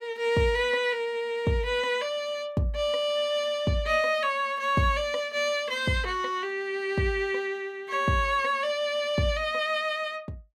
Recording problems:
none

